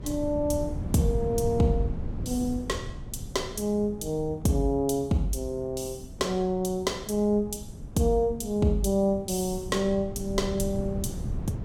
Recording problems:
wind noise; below 170 Hz, SNR 10 dB

